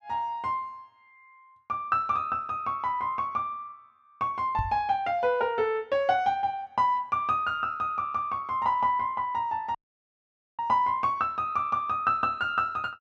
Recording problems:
microphone bump; at 4.5 s; peak -1 dB vs average level
audio cutting out; at 10 s for 1 s

